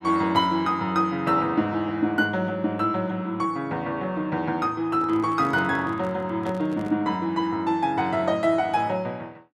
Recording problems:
microphone handling noise; from 5 to 7 s; peak -9 dB vs average level

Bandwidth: 13 kHz